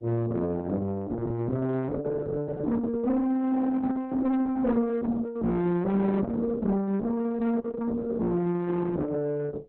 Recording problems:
codec artefacts; Opus, log-spectral distance 2 dB
distorted audio; soft clipping, signal-to-distortion ratio 10 dB

